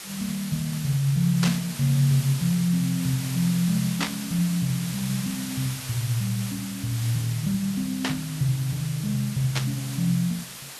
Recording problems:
background hiss; slope +1 dB per octave, SNR 10 dB
static burst; 4 times, first at 1.5 s; peak +3 dB vs average level

